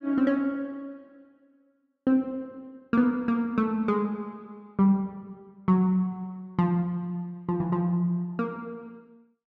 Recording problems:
none

